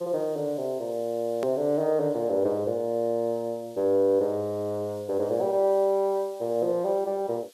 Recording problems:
hiss; slope +4 dB per octave, SNR 27 dB
edit click; at 1.5 s

